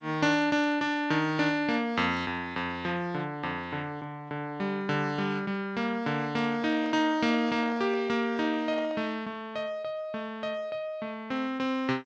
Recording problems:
codec artefacts; MP2, then G.722, log-spectral distance 2 dB
microphone handling noise; from 6.5 to 9 s; peak -9 dB vs average level

